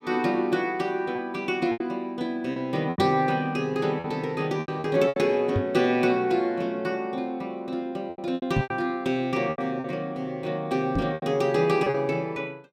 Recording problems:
packet loss; 8% of the sound replaced, filled with repeated pitch periods
microphone thump; 4 times, first at 3 s; peak +4 dB vs average level

